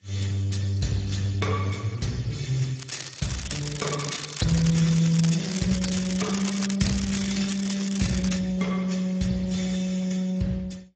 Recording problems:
codec artefacts; AAC, then Speex, log-spectral distance 8 dB, nothing above 7.6 kHz
crackling; from 3 to 8.5 s; loose cable, SNR 8 dB

